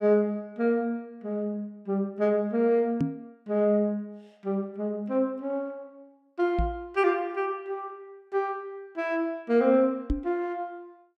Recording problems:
microphone bump; at 3 s, at 6.5 s and at 10 s; peak +5 dB vs average level

